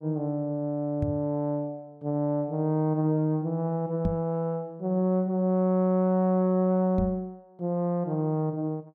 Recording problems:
knock on the microphone; at 1 s, at 4 s and at 7 s; peak +1 dB vs average level

